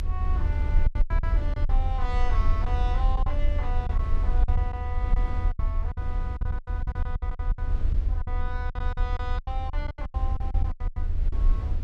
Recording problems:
rumble; below 66 Hz, SNR -10 dB
lost packets; 14% of the sound replaced, filled with silence

